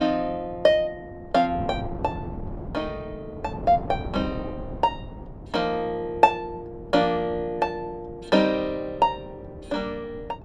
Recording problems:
wind on the microphone; below 360 Hz, SNR 13 dB

